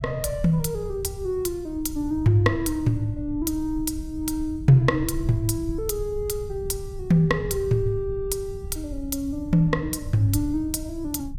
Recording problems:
rumble; below 94 Hz, SNR 12 dB

